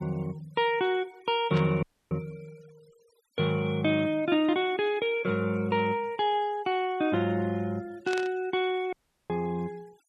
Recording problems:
denoising artefacts; signal-to-artefact ratio 27 dB
static burst; at 1.5 s and at 8 s; peak -5 dB vs average level
dropout; at 2 s and at 9 s

